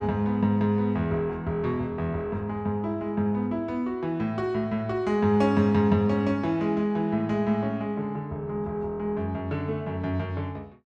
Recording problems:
none

